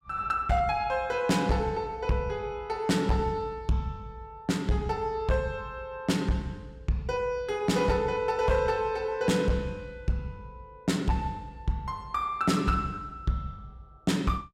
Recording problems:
distorted audio; hard clipping, signal-to-distortion ratio 11 dB

